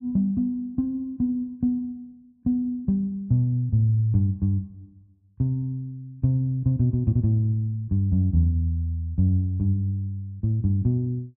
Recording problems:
none

